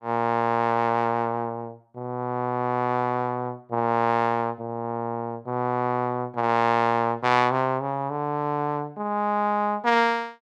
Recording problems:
none

